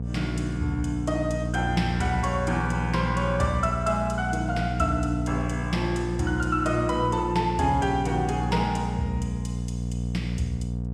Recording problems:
electrical hum; 60 Hz, harmonics up to 540 Hz, SNR 3 dB

